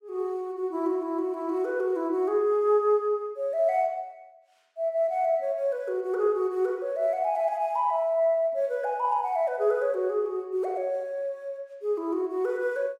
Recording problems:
none

